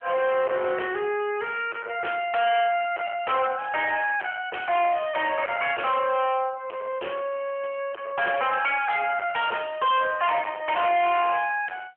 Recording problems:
telephone audio; 320 Hz to 3.3 kHz, AMR-NB
distorted audio; soft clipping, signal-to-distortion ratio 7 dB

